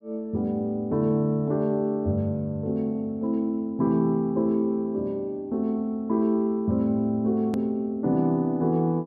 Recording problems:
hard cut with a click; at 7.5 s

